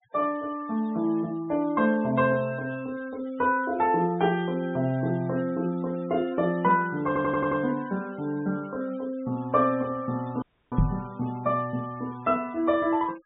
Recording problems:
treble cut off; nothing above 4 kHz
noise reduction artefacts; signal-to-artefact ratio 25 dB
stutter; at 7 s
audio cutting out; at 10 s
knock on the microphone; at 11 s; peak +8 dB vs average level

